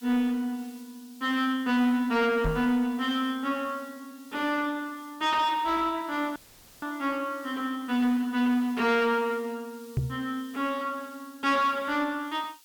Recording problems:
distortion; soft clipping, signal-to-distortion ratio 10 dB
background hiss; slope +3 dB per octave, SNR 24 dB
microphone thump; at 2.5 s and at 10 s; peak +4 dB vs average level
audio cutting out; at 6.5 s

